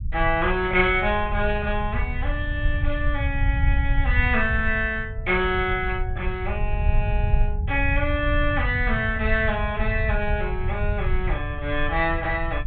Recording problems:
low-pass filter; nothing above 4 kHz
rumble; below 84 Hz, SNR 3 dB

